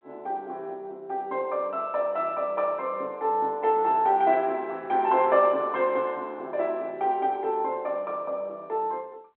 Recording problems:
telephone audio; 320 Hz to 3.2 kHz, G.726

